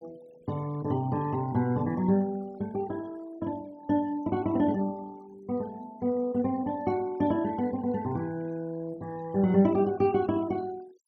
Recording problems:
noise reduction artefacts; signal-to-artefact ratio 24 dB

